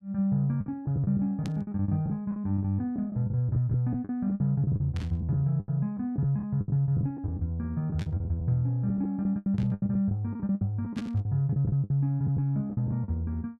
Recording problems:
lost packets; 14% of the sound replaced, filled with the last packet
burst of static; 5 times, first at 1.5 s; peak -11 dB vs average level

